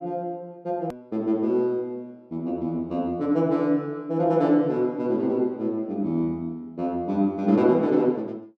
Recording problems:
click at an edit; at 1 s

